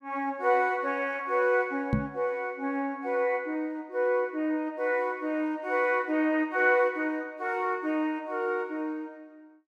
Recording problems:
microphone thump; at 2 s; peak +5 dB vs average level

